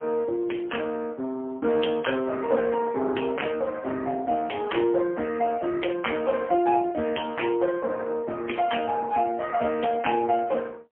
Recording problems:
phone line; 190 Hz to 3.3 kHz, AMR-NB, then MP3

